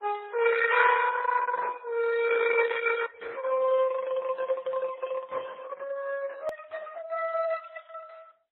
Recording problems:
lossy codec; Opus, then MP3, log-spectral distance 4 dB
hard cut with a click; at 6.5 s

